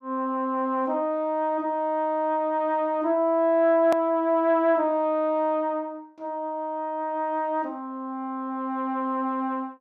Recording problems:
click at an edit; at 4 s

